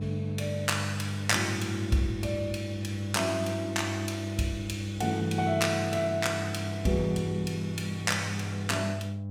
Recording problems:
hum; 50 Hz, harmonics up to 500 Hz, SNR 5 dB

